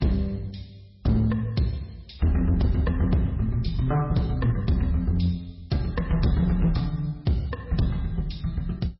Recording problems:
codec artefacts; MP3, log-spectral distance 3 dB, nothing above 5.5 kHz
distortion; hard clipping, signal-to-distortion ratio 12 dB

